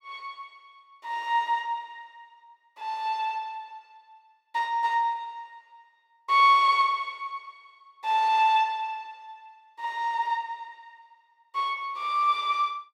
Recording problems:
none

